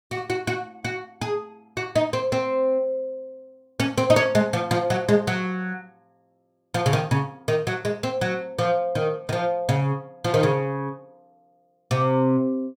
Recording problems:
none

